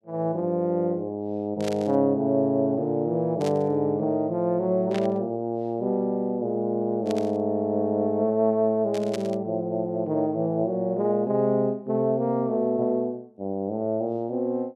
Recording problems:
burst of static; 5 times, first at 1.5 s; peak -6 dB vs average level

